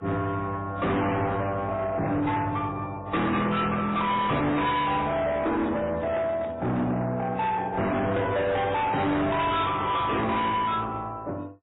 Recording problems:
lossy compression; MP3, then AAC, log-spectral distance 3 dB, nothing above 3.8 kHz
distorted audio; soft clipping, signal-to-distortion ratio 7 dB
handling noise; from 3.5 to 6.5 s; peak -5 dB vs average level

